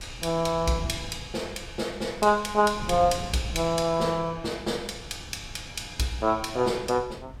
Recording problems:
wind on the microphone; below 180 Hz, SNR 15 dB

